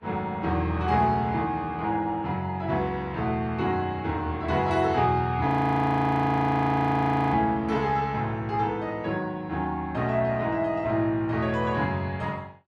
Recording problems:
lossy codec; Vorbis, log-spectral distance 2 dB, nothing above 13.1 kHz
frozen audio; at 5.5 s for 2 s

